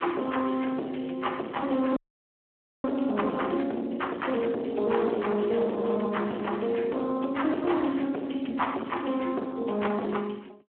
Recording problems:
phone line; 220 Hz to 3.3 kHz, Speex
distorted audio; soft clipping, signal-to-distortion ratio 9 dB
frozen audio; at 2 s for 1 s

